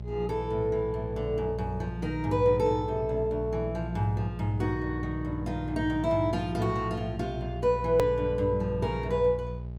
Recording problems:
electrical hum; 60 Hz, harmonics up to 600 Hz, SNR 8 dB
hard cut with a click; at 8 s

